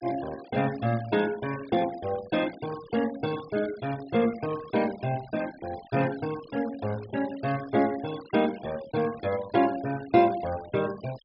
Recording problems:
treble cut off; nothing above 5.5 kHz
noise reduction artefacts; signal-to-artefact ratio 17 dB

